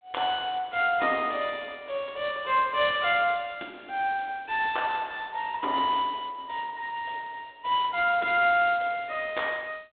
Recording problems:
phone line; 240 Hz to 3.9 kHz, G.726

